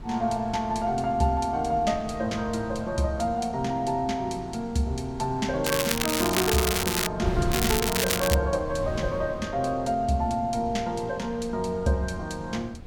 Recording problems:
wind noise; below 190 Hz, SNR 11 dB
crackling; from 5.5 to 7 s and at 7.5 s; loose cable, SNR 0 dB

